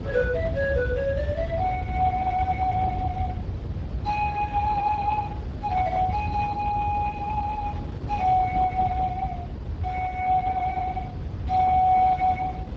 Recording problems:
lossy compression; Speex, log-spectral distance 2 dB
rumble; below 120 Hz, SNR 8 dB
wind on the microphone; below 510 Hz, SNR 13 dB

